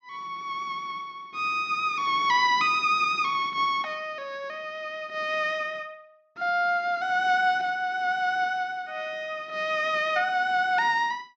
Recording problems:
low-pass filter; nothing above 8 kHz

